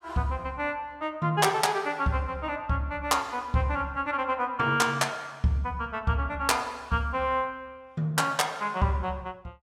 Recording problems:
none

